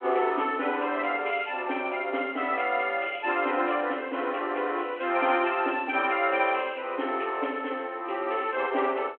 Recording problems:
phone line; 260 Hz to 3.3 kHz, G.726

